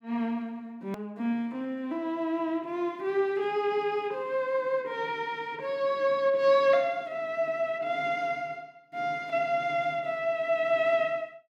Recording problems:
edit click; at 1 s

